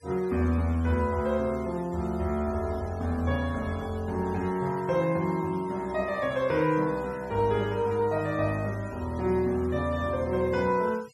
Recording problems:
denoising artefacts; signal-to-artefact ratio 23 dB

